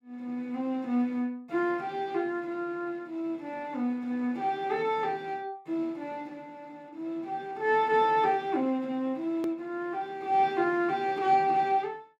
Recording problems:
edit click; at 9.5 s

